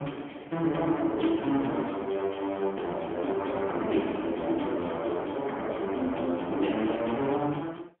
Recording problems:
telephone audio; 190 Hz to 3.3 kHz, AMR-NB, then MP3

